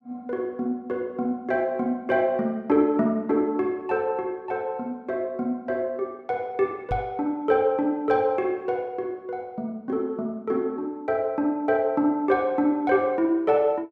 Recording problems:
knock on the microphone; at 7 s; peak -2 dB vs average level

